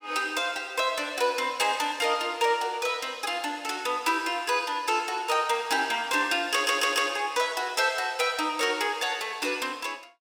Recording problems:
stutter; at 6.5 s

